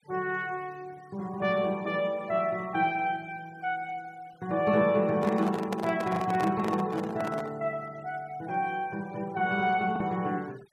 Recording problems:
denoising artefacts; signal-to-artefact ratio 24 dB
packet loss; 0.8% of the sound replaced, filled with the last packet
handling noise; from 5 to 7.5 s; peak 0 dB vs average level

